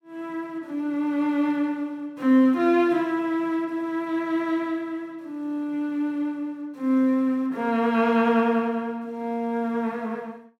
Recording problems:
none

